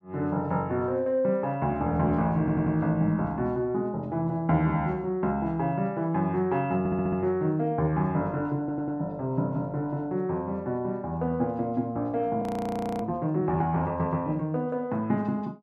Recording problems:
audio stuttering; at 2.5 s, at 7 s and at 8.5 s
frozen audio; at 12 s for 0.5 s

